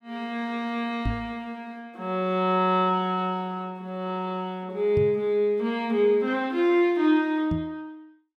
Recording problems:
knock on the microphone; at 1 s, at 5 s and at 7.5 s; peak +1 dB vs average level

